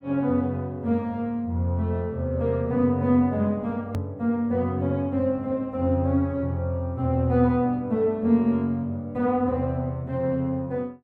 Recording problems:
click at an edit; at 4 s

